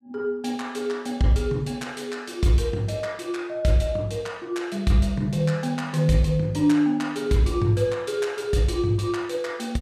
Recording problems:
none

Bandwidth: 14.5 kHz